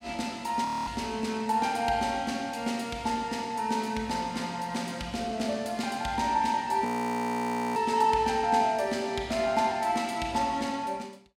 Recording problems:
frozen audio; at 0.5 s and at 7 s for 1 s

